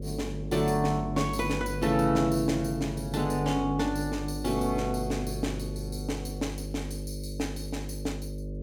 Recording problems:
electrical hum; 50 Hz, harmonics up to 600 Hz, SNR 7 dB

